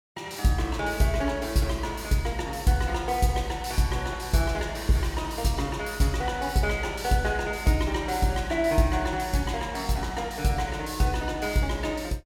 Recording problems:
none

